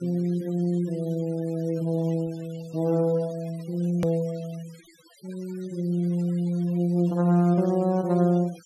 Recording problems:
noise reduction artefacts; signal-to-artefact ratio 25 dB
hard cut with a click; at 4 s

